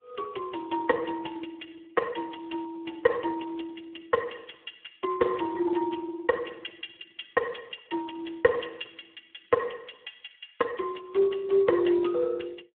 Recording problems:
telephone audio; 260 Hz to 3.4 kHz, Speex

